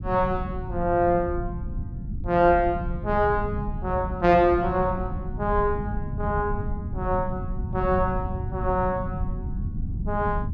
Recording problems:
low-frequency rumble; below 140 Hz, SNR 7 dB

